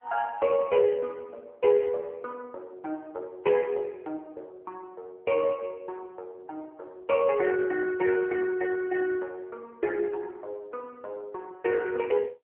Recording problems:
phone line; 260 Hz to 3.3 kHz, AMR-NB

